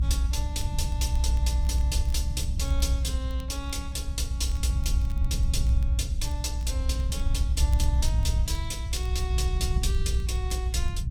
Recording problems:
rumble; below 70 Hz, strongest tone 58 Hz, SNR -6 dB
crackle; vinyl, SNR 22 dB

